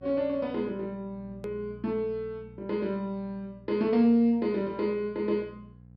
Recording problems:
treble cut off; nothing above 5.4 kHz
hum; 60 Hz, harmonics up to 540 Hz, SNR 21 dB
click at an edit; at 1.5 s

